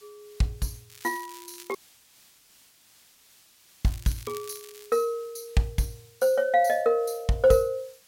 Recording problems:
hiss; slope +2 dB per octave, SNR 28 dB
crackling; from 1 to 5 s; loose cable, SNR 20 dB
audio cutting out; at 2 s for 2 s

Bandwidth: 16.5 kHz